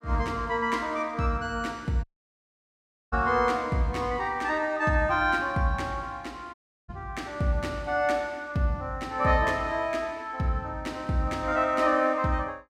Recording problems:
audio cutting out; at 2 s for 1 s and at 6.5 s

